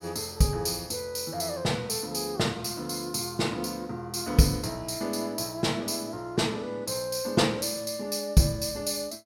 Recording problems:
none

